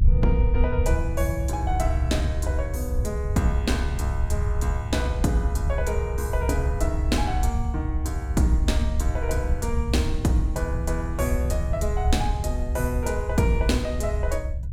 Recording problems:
low-frequency rumble; below 80 Hz, SNR -1 dB

